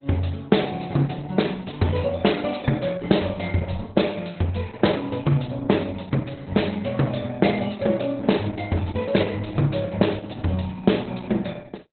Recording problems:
lossy compression; Opus, log-spectral distance 7 dB, nothing above 4.1 kHz

